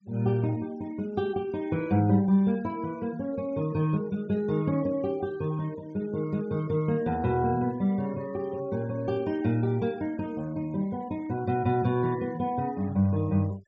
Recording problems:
treble cut off; nothing above 8 kHz
denoising artefacts; signal-to-artefact ratio 25 dB

